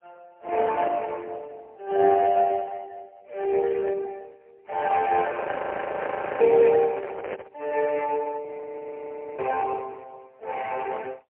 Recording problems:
telephone audio; 340 Hz to 2.3 kHz, AMR-NB, then MP3
microphone handling noise; from 5 to 7.5 s; peak -4 dB vs average level
audio freezing; at 5.5 s for 1 s and at 8.5 s for 1 s

